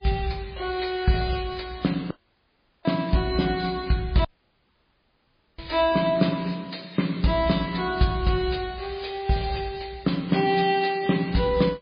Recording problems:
codec artefacts; MP3, log-spectral distance 6 dB, nothing above 4.6 kHz
dropout; at 2 s for 0.5 s and at 4.5 s for 1.5 s

